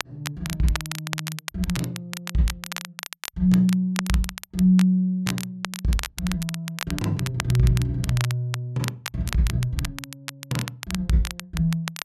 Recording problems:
crackling; vinyl, SNR 10 dB

